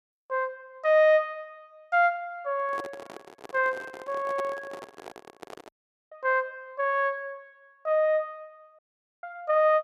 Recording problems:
handling noise; from 2.5 to 5.5 s; peak -7 dB vs average level
dropout; at 5.5 s and at 9 s

